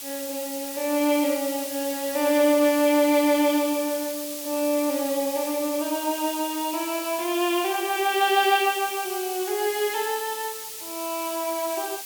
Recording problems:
hiss; SNR 8 dB

